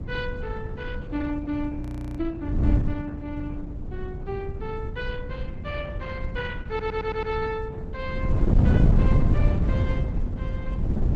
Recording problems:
lossy compression; Opus, log-spectral distance 2 dB, nothing above 13.1 kHz
wind on the microphone; below 150 Hz, SNR -5 dB
frozen audio; at 2 s
audio stuttering; at 6.5 s

